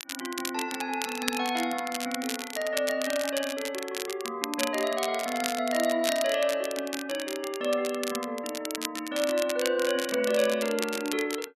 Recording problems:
crackling; vinyl, SNR 6 dB

